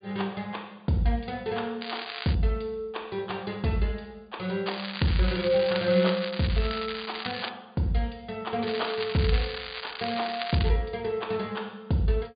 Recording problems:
low-pass filter; nothing above 4.8 kHz
crackling; at 2 s, from 4.5 to 7.5 s and from 8.5 to 11 s; loose cable, SNR 7 dB

